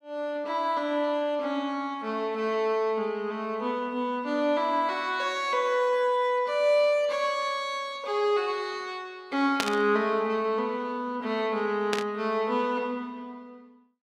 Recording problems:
burst of static; at 9.5 s and at 12 s; peak +4 dB vs average level

